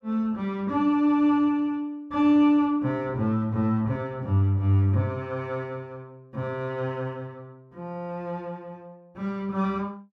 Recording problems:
none

